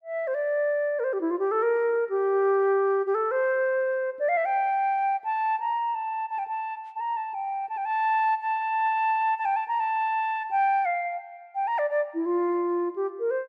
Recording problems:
none

